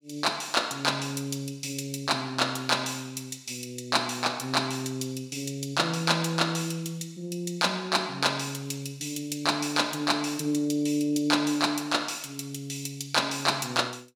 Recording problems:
none

